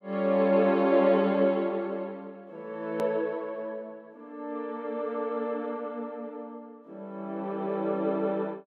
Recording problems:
click at an edit; at 3 s

